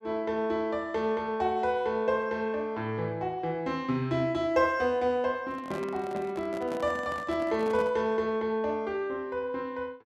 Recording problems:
microphone handling noise; from 5.5 to 8 s; peak -7 dB vs average level

